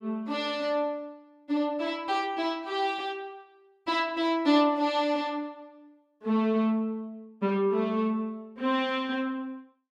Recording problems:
none

